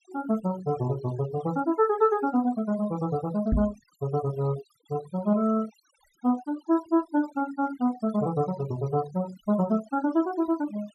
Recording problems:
denoising artefacts; signal-to-artefact ratio 18 dB
knock on the microphone; at 3.5 s; peak +5 dB vs average level

